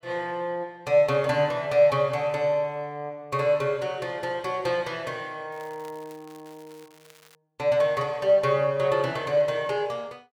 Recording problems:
crackling; from 5.5 to 7.5 s; loose cable, SNR 28 dB

